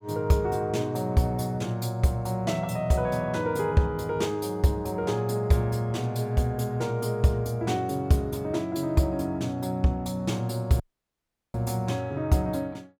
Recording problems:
audio cutting out; at 11 s for 0.5 s

